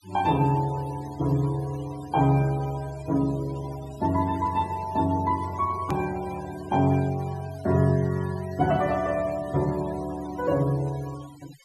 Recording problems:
noise reduction artefacts; signal-to-artefact ratio 19 dB
click at an edit; at 6 s

